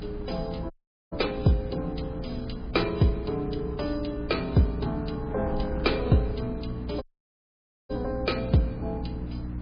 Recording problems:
lossy compression; MP3, log-spectral distance 5 dB
hum; 60 Hz, harmonics up to 300 Hz, SNR 10 dB
wind on the microphone; below 210 Hz, SNR 11 dB
audio cutting out; at 0.5 s and at 7 s for 1 s

